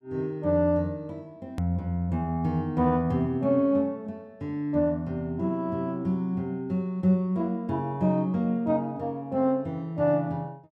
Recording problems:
edit click; at 1.5 s

